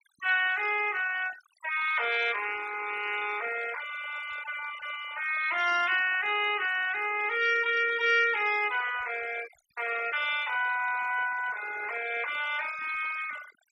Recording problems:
denoising artefacts; signal-to-artefact ratio 13 dB

